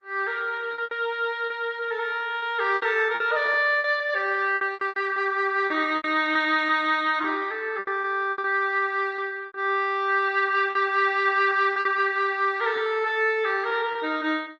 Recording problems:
codec artefacts; Opus, log-spectral distance 2 dB
packet loss; 10% of the sound replaced, filled with repeated pitch periods

